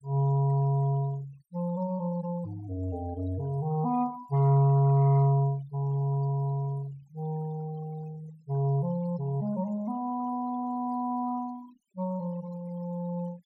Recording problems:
denoising artefacts; signal-to-artefact ratio 25 dB

